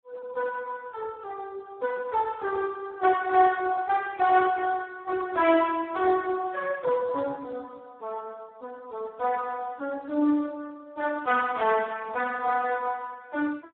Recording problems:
telephone audio; 260 Hz to 2.6 kHz, Speex

